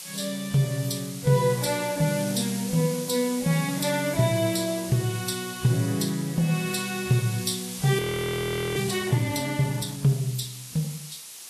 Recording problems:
lossy codec; Vorbis, log-spectral distance 11 dB, nothing above 13.8 kHz
hiss; slope +3 dB per octave, SNR 11 dB
frozen audio; at 8 s for 1 s

